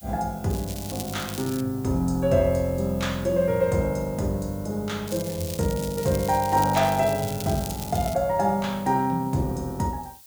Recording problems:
background hiss; SNR 21 dB
crackle; until 1.5 s and from 5 to 8 s; loose cable, SNR 12 dB

